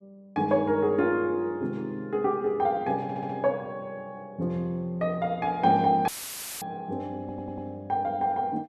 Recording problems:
stutter; at 3 s and at 7 s
audio cutting out; at 6 s for 0.5 s; filled with static

